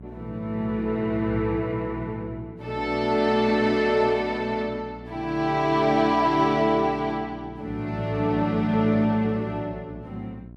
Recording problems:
hum; 60 Hz, harmonics up to 720 Hz, SNR 18 dB

